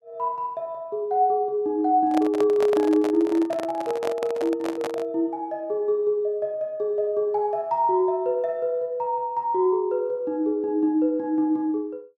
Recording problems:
microphone handling noise; from 2 to 5 s; peak -2 dB vs average level

